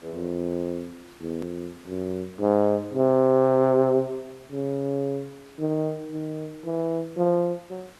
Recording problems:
hiss; slope -3 dB per octave, SNR 26 dB
hard cut with a click; at 1.5 s

